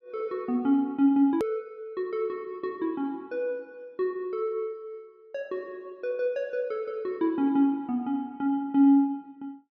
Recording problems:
click at an edit; at 1.5 s

